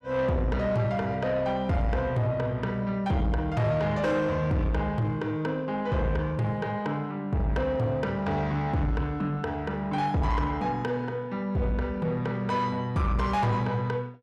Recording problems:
distortion; soft clipping, signal-to-distortion ratio 10 dB

